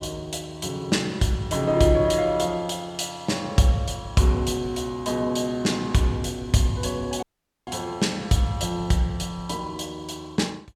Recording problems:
audio cutting out; at 7 s

